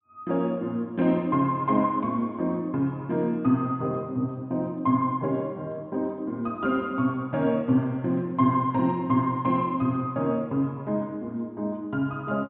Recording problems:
treble cut off; nothing above 4 kHz

